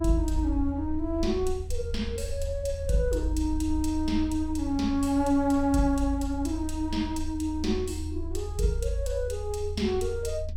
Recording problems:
low-frequency rumble; below 80 Hz, strongest tone 20 Hz, SNR 8 dB

